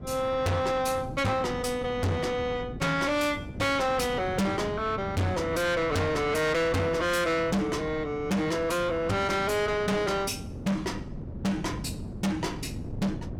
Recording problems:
distortion; soft clipping, signal-to-distortion ratio 6 dB
wind on the microphone; below 300 Hz, SNR 11 dB

